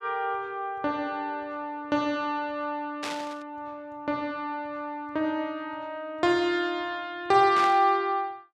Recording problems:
static burst; at 3 s and at 7.5 s; peak -3 dB vs average level

